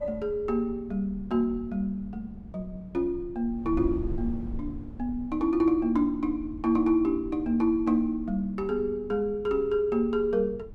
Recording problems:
wind on the microphone; below 110 Hz, SNR 15 dB

